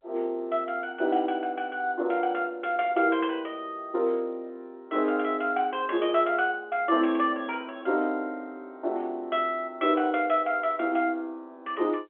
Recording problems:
phone line; 280 Hz to 3.4 kHz, G.711

